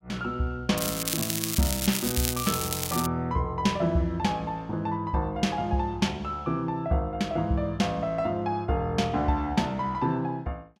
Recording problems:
crackle; from 1 to 3 s; loose cable, SNR 1 dB

